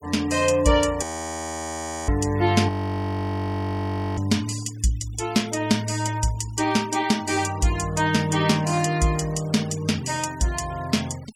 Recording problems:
noise reduction artefacts; signal-to-artefact ratio 20 dB
frozen audio; at 1 s for 1 s and at 2.5 s for 1.5 s

